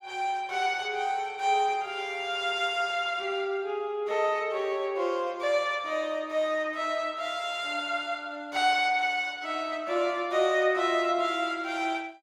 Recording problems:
none

